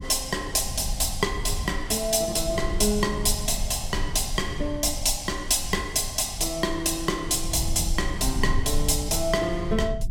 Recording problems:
rumble; below 66 Hz, strongest tone 18 Hz, SNR 9 dB

